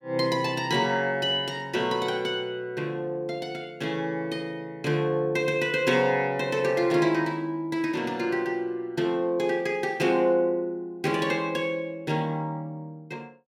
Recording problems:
none

